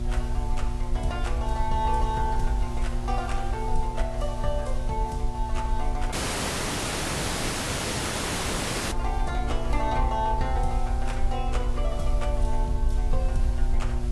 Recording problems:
lossy codec; AAC, log-spectral distance 4 dB, nothing above 11 kHz
hum; 60 Hz, harmonics up to 1.1 kHz, SNR 6 dB
hiss; SNR 16 dB
rumble; below 54 Hz, strongest tone 20 Hz, SNR -1 dB
audio cutting out; at 6 s for 3 s

